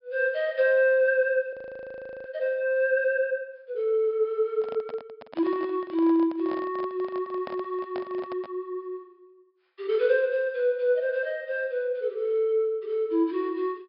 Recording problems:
treble cut off; nothing above 5.5 kHz
frozen audio; at 1.5 s for 0.5 s
microphone handling noise; from 4.5 to 8.5 s; peak -8 dB vs average level

